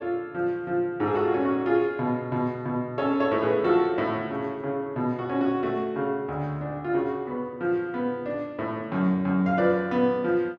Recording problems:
none

